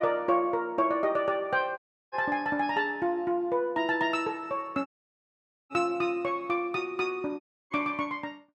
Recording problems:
dropout; at 2 s, at 5 s for 1 s and at 7.5 s

